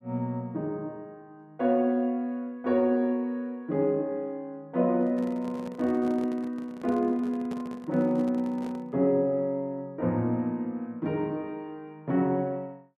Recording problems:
handling noise; from 5 to 9 s; peak -7 dB vs average level

